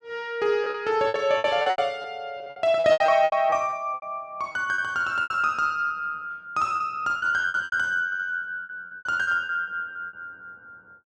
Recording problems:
packet loss; 16% of the sound replaced, filled with repeated pitch periods
stutter; at 8 s

